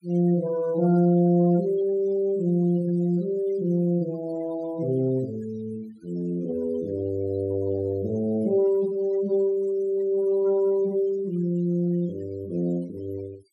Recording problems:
denoising artefacts; signal-to-artefact ratio 24 dB

